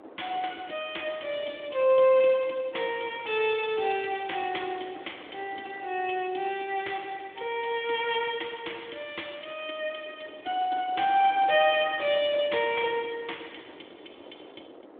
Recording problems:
telephone audio; 240 Hz to 3.6 kHz, Speex
wind noise; below 700 Hz, SNR 21 dB

